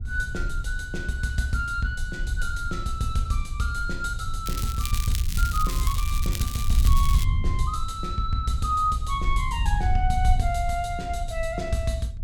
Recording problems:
rumble; below 70 Hz, SNR 1 dB
crackle; from 4.5 to 7 s; loose cable, SNR 7 dB

